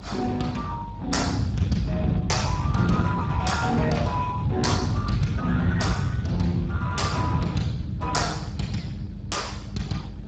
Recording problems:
lossy compression; Speex, log-spectral distance 3 dB, nothing above 7.6 kHz
hum; 50 Hz, harmonics up to 600 Hz, SNR 12 dB
low-frequency rumble; below 160 Hz, SNR 2 dB
wind noise; below 430 Hz, SNR 19 dB

